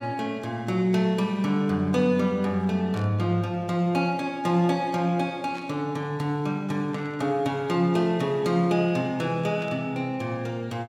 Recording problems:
static burst; 4 times, first at 3 s; peak -13 dB vs average level

